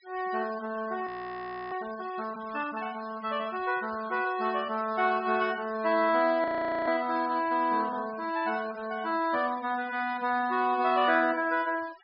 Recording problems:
treble missing; nothing above 5.5 kHz
noise reduction artefacts; signal-to-artefact ratio 20 dB
frozen audio; at 1 s for 0.5 s and at 6.5 s

